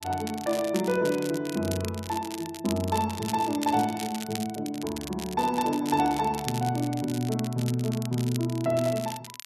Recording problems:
crackling; vinyl, SNR 12 dB

